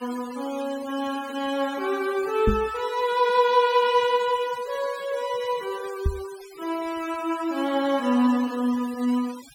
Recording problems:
denoising artefacts; signal-to-artefact ratio 19 dB
microphone thump; at 2.5 s and at 6 s; peak +5 dB vs average level

